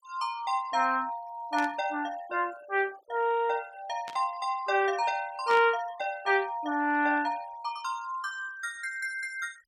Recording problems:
denoising artefacts; signal-to-artefact ratio 23 dB
static burst; at 1.5 s, at 4 s and at 5.5 s; peak -6 dB vs average level

